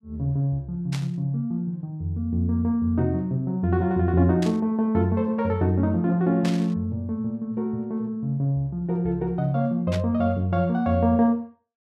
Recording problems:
burst of static; 4 times, first at 1 s; peak -6 dB vs average level

